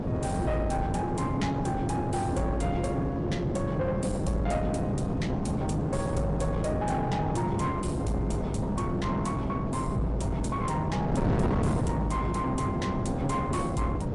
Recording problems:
lossy compression; MP3, log-spectral distance 2 dB, nothing above 10.7 kHz
distortion; soft clipping, signal-to-distortion ratio 7 dB
hum; 50 Hz, harmonics up to 1.2 kHz, SNR 13 dB
wind on the microphone; below 380 Hz, SNR 0 dB

